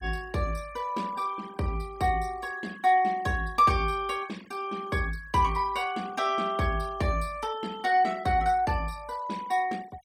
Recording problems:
noise reduction artefacts; signal-to-artefact ratio 21 dB

